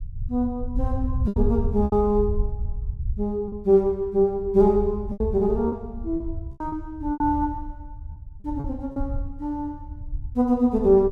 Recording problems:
rumble; below 82 Hz, SNR 9 dB
packet loss; 7% of the sound replaced, filled with repeated pitch periods

